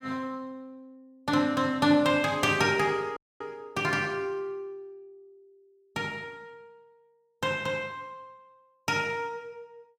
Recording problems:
dropout; at 3 s

